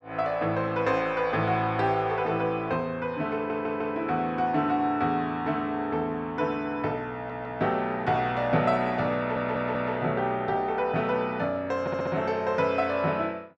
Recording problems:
audio stuttering; 4 times, first at 3.5 s

